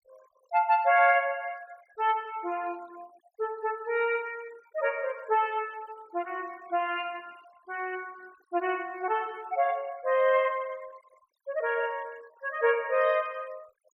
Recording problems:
noise reduction artefacts; signal-to-artefact ratio 26 dB

